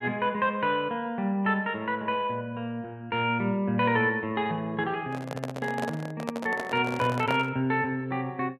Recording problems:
microphone handling noise; from 5 to 7.5 s; peak +1 dB vs average level

